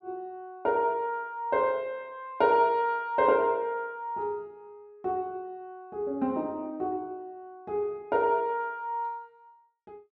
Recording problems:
none

